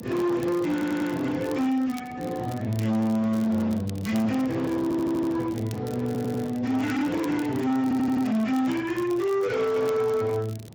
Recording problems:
lossy codec; Speex, log-spectral distance 3 dB, nothing above 16.5 kHz
distortion; hard clipping, uneven, signal-to-distortion ratio 6 dB
wind on the microphone; below 460 Hz, SNR 18 dB
crackling; vinyl, SNR 23 dB
audio stuttering; 4 times, first at 0.5 s

